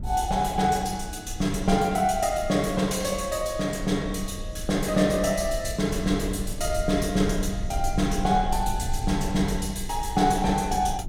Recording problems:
low-frequency rumble; below 76 Hz, SNR 10 dB

